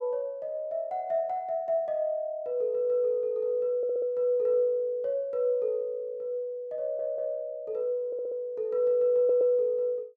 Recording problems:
audio stuttering; 4 times, first at 4 s

